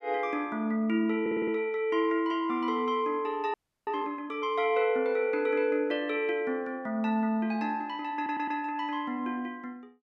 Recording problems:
stutter; at 1 s and at 8 s
audio freezing; at 3.5 s

